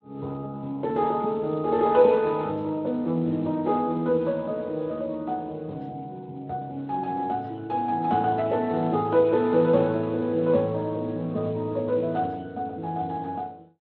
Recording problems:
lossy codec; MP3, then Speex, log-spectral distance 2 dB

